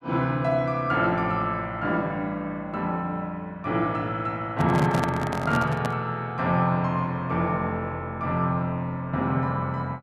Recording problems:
microphone handling noise; from 4.5 to 6 s; peak +2 dB vs average level

